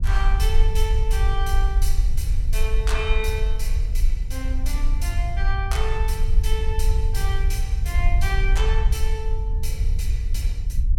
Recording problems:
rumble; below 58 Hz, SNR -8 dB

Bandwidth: 17 kHz